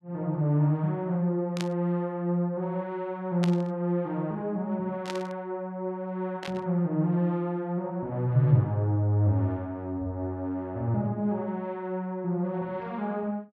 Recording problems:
burst of static; 4 times, first at 1.5 s; peak -3 dB vs average level

